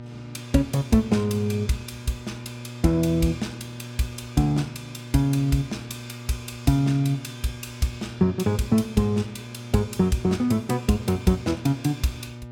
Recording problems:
electrical hum; 60 Hz, harmonics up to 1.2 kHz, SNR 14 dB

